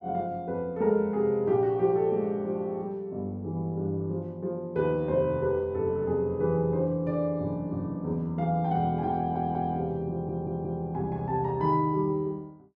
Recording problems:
stutter; at 9 s and at 10 s

